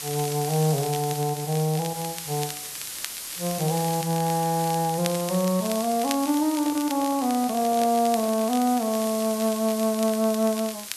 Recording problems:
background hiss; slope +2 dB per octave, SNR 9 dB
crackling; vinyl, SNR 15 dB
handling noise; from 6 to 9.5 s; peak -10 dB vs average level

